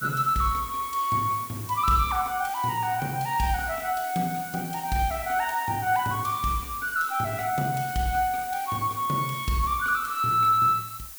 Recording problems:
background hiss; slope +1 dB per octave, SNR 13 dB

